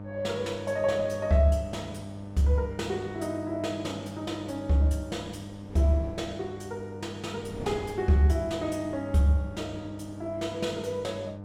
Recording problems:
electrical hum; 50 Hz, harmonics up to 1.2 kHz, SNR 12 dB
wind noise; below 450 Hz, SNR 20 dB

